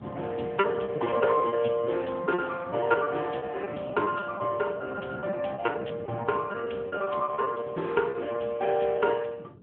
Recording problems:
telephone audio; 240 Hz to 3.4 kHz, AMR-NB
wind on the microphone; below 390 Hz, SNR 16 dB
lost packets; 14% of the sound replaced, filled with repeated pitch periods

